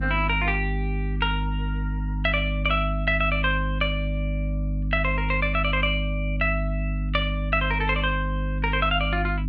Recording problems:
hum; 50 Hz, harmonics up to 300 Hz, SNR 2 dB

